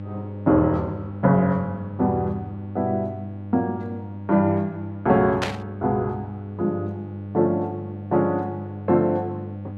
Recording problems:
hum; 50 Hz, harmonics up to 800 Hz, SNR 11 dB
static burst; at 5.5 s; peak +2 dB vs average level

